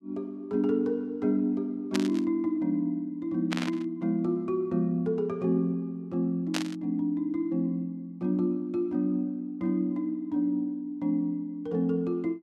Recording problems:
static burst; at 2 s, at 3.5 s and at 6.5 s; peak +2 dB vs average level

